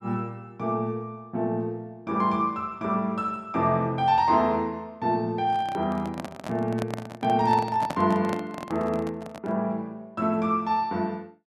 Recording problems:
handling noise; from 5.5 to 9.5 s; peak -1 dB vs average level

